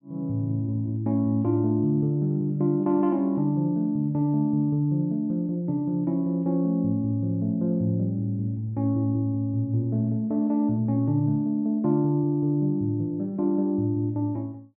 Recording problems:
low-pass filter; nothing above 4 kHz

